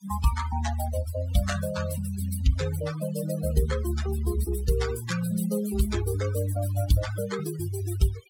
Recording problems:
noise reduction artefacts; signal-to-artefact ratio 11 dB

